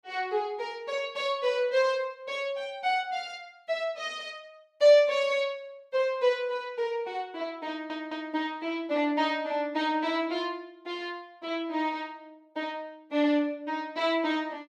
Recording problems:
stutter; at 7.5 s

